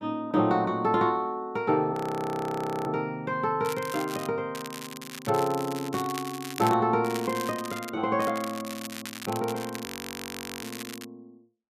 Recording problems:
audio freezing; at 2 s for 1 s and at 10 s for 1 s
crackle; 4 times, first at 3.5 s; loose cable, SNR 12 dB

